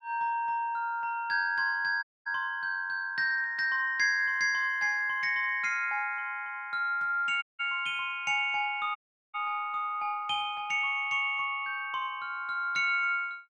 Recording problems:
audio cutting out; at 2 s, at 7.5 s and at 9 s

